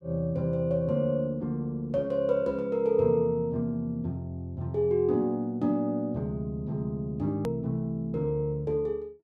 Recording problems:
edit click; at 7.5 s

